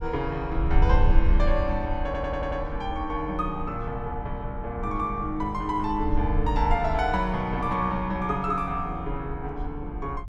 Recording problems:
wind noise; below 62 Hz, SNR 3 dB
audio stuttering; at 2 s

